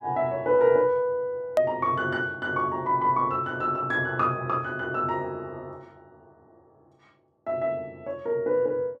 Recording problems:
hard cut with a click; at 1.5 s

